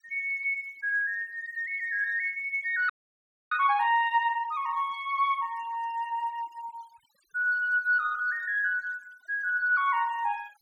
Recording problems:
noise reduction artefacts; signal-to-artefact ratio 25 dB
frozen audio; at 3 s for 0.5 s

